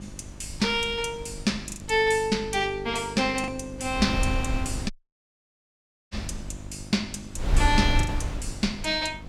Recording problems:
electrical hum; 50 Hz, harmonics up to 1.2 kHz, SNR 17 dB
wind on the microphone; below 100 Hz, SNR 5 dB
packet loss; 3% of the sound replaced, filled with the last packet
audio cutting out; at 5 s for 1 s

